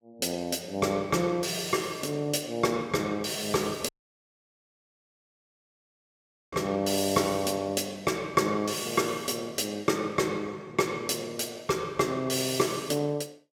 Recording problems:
dropout; at 4 s for 2.5 s

